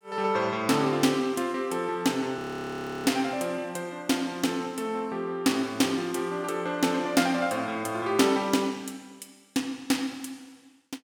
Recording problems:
frozen audio; at 2.5 s for 0.5 s

